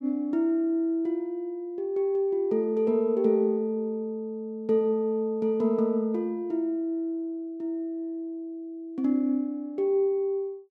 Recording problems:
none

